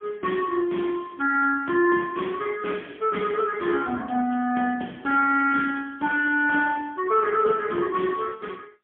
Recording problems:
telephone audio; 220 Hz to 2.7 kHz, AMR-NB, then MP3

